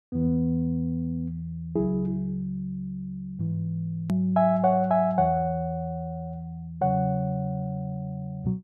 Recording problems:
hard cut with a click; at 4 s

